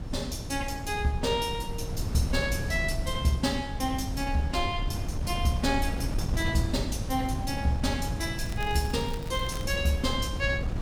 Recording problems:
wind on the microphone; below 150 Hz, SNR 4 dB
crackling; from 8.5 to 9.5 s; loose cable, SNR 17 dB

